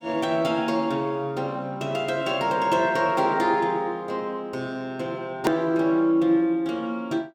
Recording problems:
edit click; at 5.5 s

